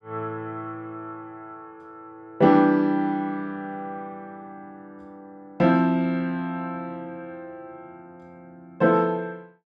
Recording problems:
none

